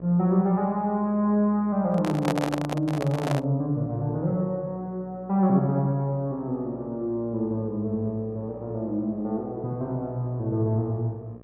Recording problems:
electrical hum; 60 Hz, harmonics up to 1.3 kHz, SNR 22 dB
handling noise; from 2 to 3.5 s; peak +2 dB vs average level

